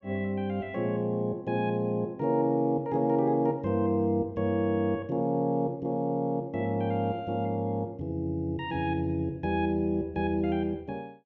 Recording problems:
none

